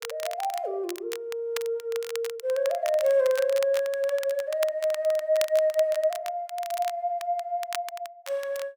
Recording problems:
crackling; vinyl, SNR 14 dB

